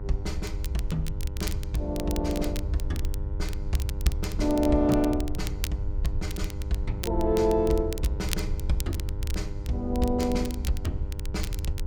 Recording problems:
hum; 50 Hz, harmonics up to 1.9 kHz, SNR 14 dB
low-frequency rumble; below 72 Hz, SNR 4 dB
crackling; vinyl, SNR 12 dB

